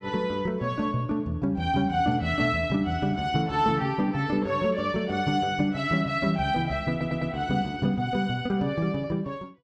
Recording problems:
audio stuttering; at 7 s

